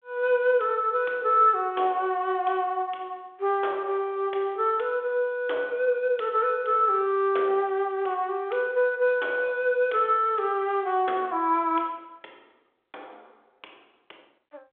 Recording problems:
telephone audio; 340 Hz to 3.5 kHz, G.726

